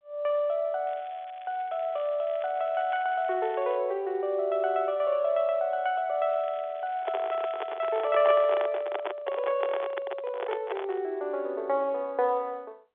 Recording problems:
phone line; 320 Hz to 3.7 kHz, G.711
crackling; from 1 to 4 s and from 6.5 to 8 s; loose cable, SNR 25 dB
handling noise; from 7 to 11 s; peak 0 dB vs average level

